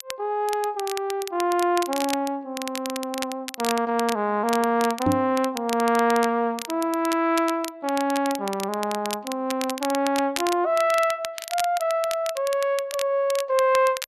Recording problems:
crackle; vinyl, SNR 11 dB
microphone bump; at 5 s; peak +4 dB vs average level

